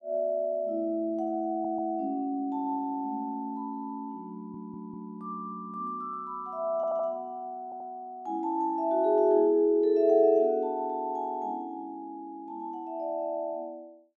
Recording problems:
audio stuttering; 4 times, first at 1.5 s

